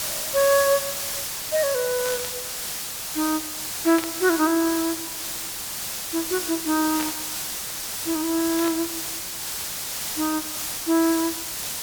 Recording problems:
background hiss; slope +1 dB per octave, SNR 3 dB
burst of static; 4 times, first at 2 s; peak -5 dB vs average level

